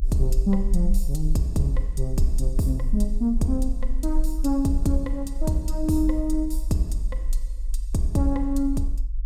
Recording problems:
rumble; below 46 Hz, strongest tone 24 Hz, SNR 3 dB

